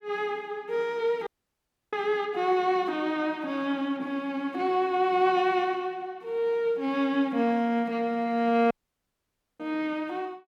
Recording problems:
dropout; at 1.5 s for 0.5 s and at 8.5 s for 1 s

